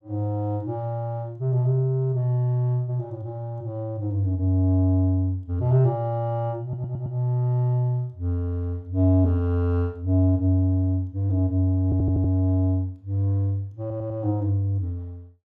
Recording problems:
stutter; at 6.5 s, at 12 s and at 14 s

